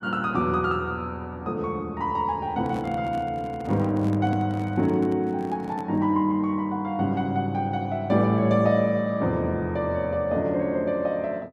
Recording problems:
handling noise; from 2.5 to 6 s; peak -5 dB vs average level

